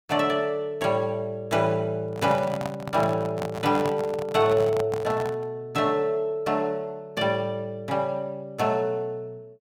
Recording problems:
handling noise; from 2 to 5.5 s; peak -2 dB vs average level

